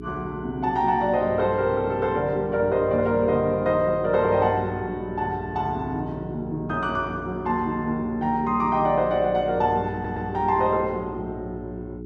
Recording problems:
electrical hum; 60 Hz, harmonics up to 420 Hz, SNR 13 dB
audio stuttering; at 10 s

